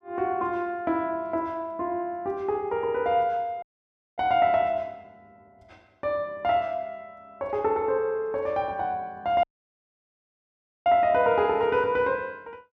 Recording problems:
audio cutting out; at 3.5 s for 0.5 s and at 9.5 s for 1.5 s

